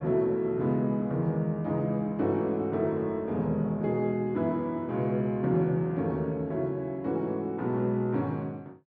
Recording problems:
none

